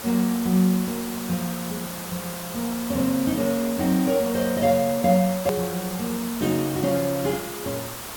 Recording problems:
background hiss; SNR 9 dB
edit click; at 5.5 s

